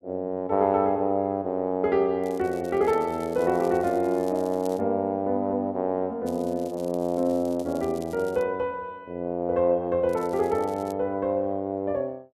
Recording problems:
crackling; from 2 to 5 s, from 6.5 to 8.5 s and at 10 s; loose cable, SNR 25 dB

